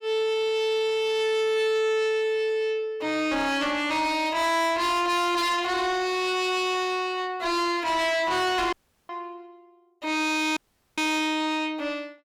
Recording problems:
distorted audio; soft clipping, signal-to-distortion ratio 8 dB
dropout; at 8.5 s and at 11 s

